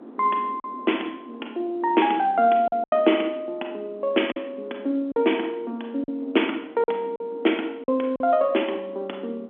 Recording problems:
telephone audio; 240 Hz to 3.4 kHz, G.711
wind on the microphone; below 430 Hz, SNR 20 dB
packet loss; 5% of the sound replaced, filled with silence

